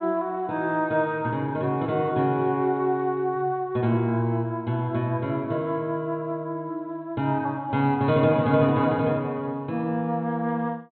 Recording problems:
low-pass filter; nothing above 4 kHz

